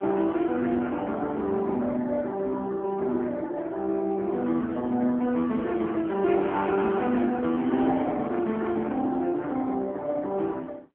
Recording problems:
phone line; 170 Hz to 3.6 kHz, AMR-NB

